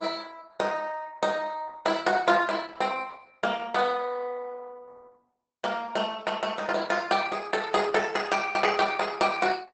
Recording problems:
lossy codec; Opus, log-spectral distance 4 dB, nothing above 8 kHz

